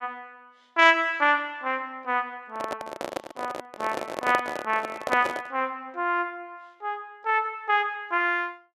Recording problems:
handling noise; from 2.5 to 5.5 s; peak +2 dB vs average level

